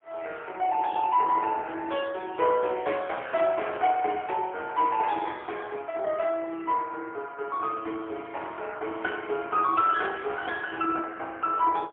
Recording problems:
telephone audio; 300 Hz to 3.4 kHz, AMR-NB, then MP3

